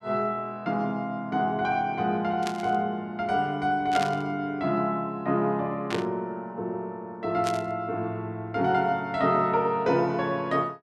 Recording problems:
static burst; 4 times, first at 2.5 s; peak -2 dB vs average level

